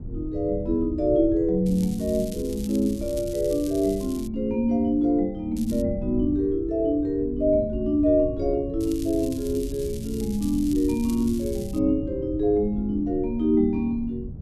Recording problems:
wind on the microphone; below 120 Hz, SNR 12 dB
crackling; from 1.5 to 4.5 s, at 5.5 s and from 9 to 12 s; loose cable, SNR 19 dB

